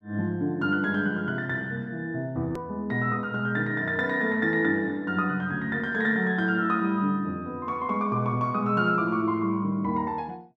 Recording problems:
hard cut with a click; at 2.5 s

